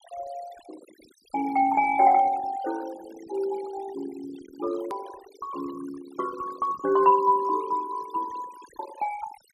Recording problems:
noise reduction artefacts; signal-to-artefact ratio 18 dB
hard cut with a click; at 5 s

